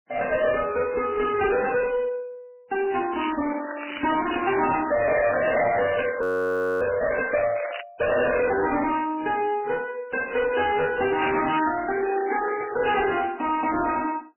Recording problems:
lossy codec; AAC, then MP3, log-spectral distance 10 dB
distorted audio; hard clipping, uneven, signal-to-distortion ratio 6 dB
crackle; from 3 to 5.5 s, from 6 to 8 s and from 11 to 13 s; loose cable, SNR 11 dB
frozen audio; at 6 s for 0.5 s

